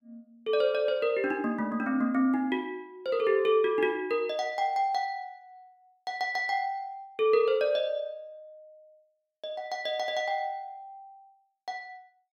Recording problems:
none

